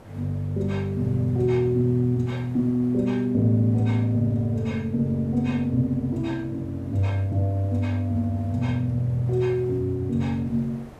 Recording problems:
background hiss; SNR 23 dB

